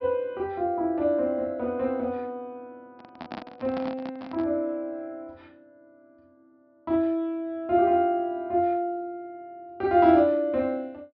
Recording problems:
treble cut off; nothing above 5.5 kHz
microphone handling noise; from 3 to 4.5 s; peak -7 dB vs average level

